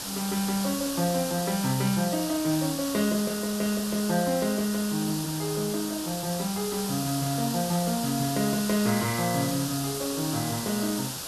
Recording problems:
background hiss; SNR 5 dB

